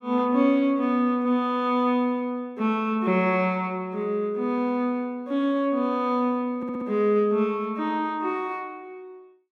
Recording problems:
audio stuttering; at 6.5 s

